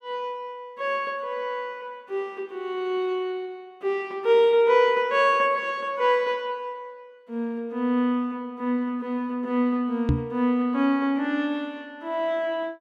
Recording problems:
microphone thump; at 10 s; peak +6 dB vs average level

